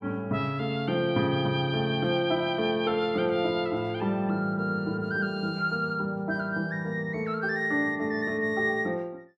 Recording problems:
none

